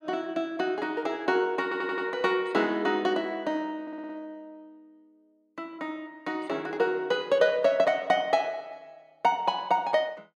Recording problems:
stutter; at 1.5 s and at 4 s

